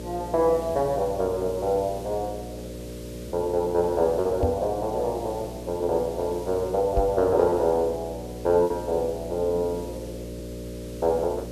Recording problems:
electrical hum; 60 Hz, harmonics up to 600 Hz, SNR 12 dB
background hiss; SNR 20 dB
lost packets; 2% of the sound replaced, filled with repeated pitch periods
microphone thump; at 4.5 s and at 7 s; peak +3 dB vs average level

